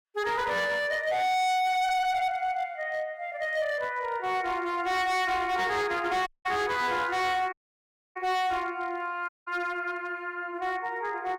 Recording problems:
distorted audio; hard clipping, signal-to-distortion ratio 7 dB
audio cutting out; at 6.5 s, at 7.5 s for 0.5 s and at 9.5 s

